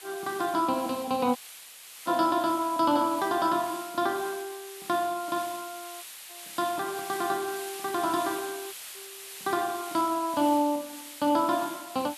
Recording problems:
hiss; SNR 13 dB
audio cutting out; at 1.5 s for 0.5 s, at 6 s and at 8.5 s

